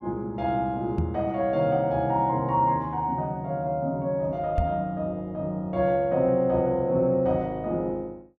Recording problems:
microphone thump; at 1 s and at 4.5 s; peak +3 dB vs average level

